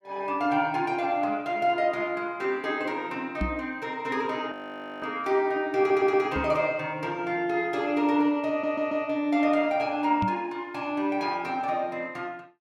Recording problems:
microphone thump; at 3.5 s, at 6.5 s and at 10 s; peak +1 dB vs average level
frozen audio; at 4.5 s for 0.5 s
stutter; at 6 s and at 8.5 s

